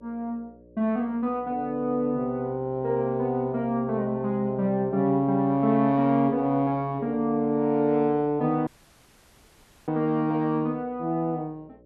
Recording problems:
hum; 60 Hz, harmonics up to 600 Hz, SNR 25 dB
dropout; at 8.5 s for 1 s

